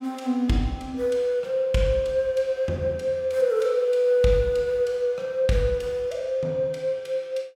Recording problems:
none

